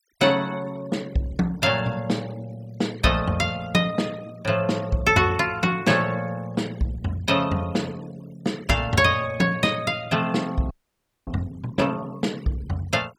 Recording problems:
denoising artefacts; signal-to-artefact ratio 24 dB
audio freezing; at 11 s for 0.5 s

